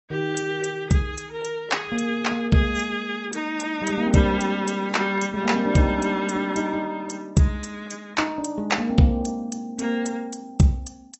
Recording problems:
lossy codec; AAC, log-spectral distance 4 dB, nothing above 8 kHz

